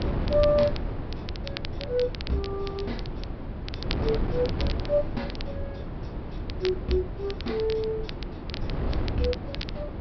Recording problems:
treble cut off; nothing above 5.5 kHz
wind noise; below 290 Hz, SNR 5 dB
crackling; vinyl, SNR 13 dB

